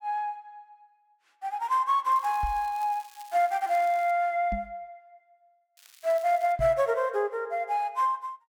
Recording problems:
crackle; from 2 to 4 s and at 6 s; loose cable, SNR 25 dB
microphone thump; at 2.5 s, at 4.5 s and at 6.5 s; peak -4 dB vs average level

